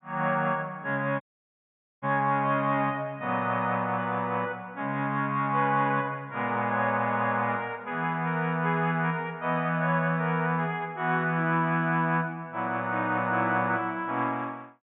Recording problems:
treble cut off; nothing above 3.7 kHz
dropout; at 1 s for 1 s

